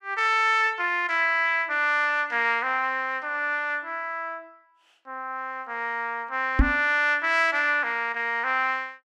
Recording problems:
microphone bump; at 6.5 s; peak +7 dB vs average level

